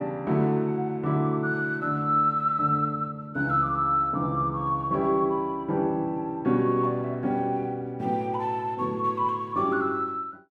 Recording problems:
none

